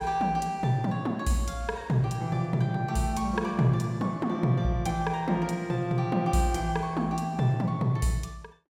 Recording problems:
none

